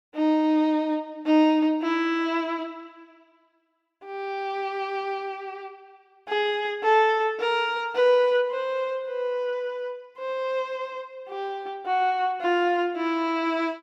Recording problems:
none

